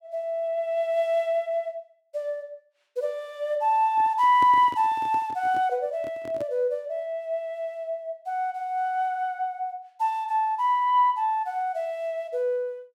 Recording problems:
microphone handling noise; from 4 to 6.5 s; peak -8 dB vs average level

